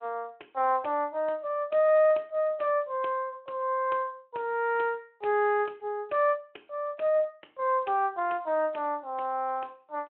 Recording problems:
telephone audio; 340 Hz to 3.1 kHz, Speex

